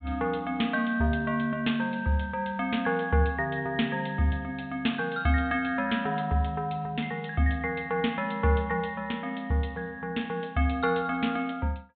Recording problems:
treble cut off; nothing above 4 kHz

